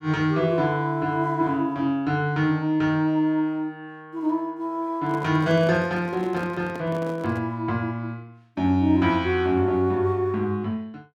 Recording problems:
microphone handling noise; from 5 to 7.5 s; peak -10 dB vs average level

